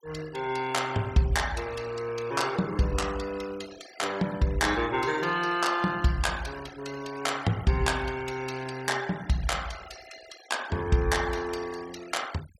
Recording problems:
denoising artefacts; signal-to-artefact ratio 18 dB

